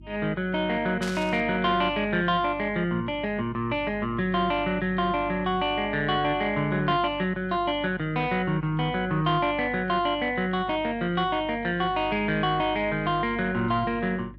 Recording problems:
mains hum; 50 Hz, harmonics up to 350 Hz, SNR 19 dB
static burst; at 1 s; peak -6 dB vs average level

